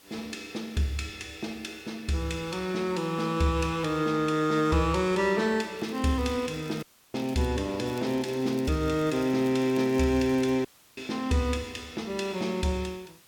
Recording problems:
background hiss; slope -1 dB per octave, SNR 28 dB
crackle; from 6 to 7.5 s and from 8 to 11 s; loose cable, SNR 24 dB
audio cutting out; at 7 s and at 11 s

